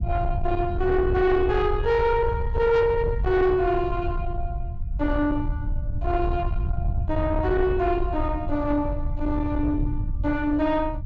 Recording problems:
treble cut off; nothing above 8 kHz
distorted audio; soft clipping, signal-to-distortion ratio 10 dB
rumble; below 100 Hz, SNR 5 dB

